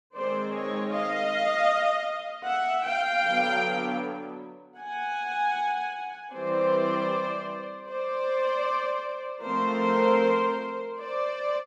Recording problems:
none

